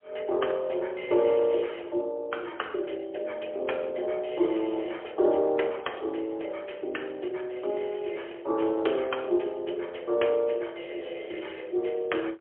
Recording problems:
phone line; 300 Hz to 3.3 kHz, AMR-NB, then MP3

